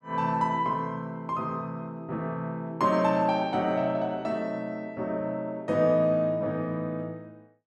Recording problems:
none

